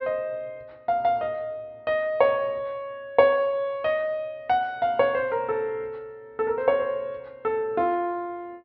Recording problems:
treble cut off; nothing above 5.5 kHz

